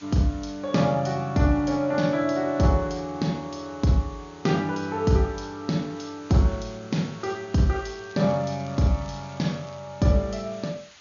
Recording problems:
low-pass filter; nothing above 6.9 kHz
hiss; SNR 25 dB
crackling; from 7.5 to 10 s; loose cable, SNR 27 dB

